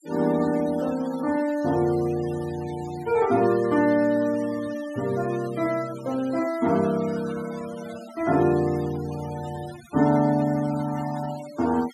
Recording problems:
denoising artefacts; signal-to-artefact ratio 18 dB

